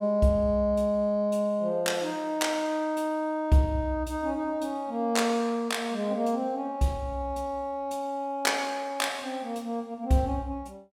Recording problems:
none

